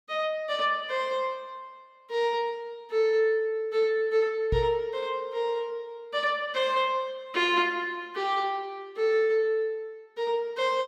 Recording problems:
microphone thump; at 4.5 s; peak +2 dB vs average level

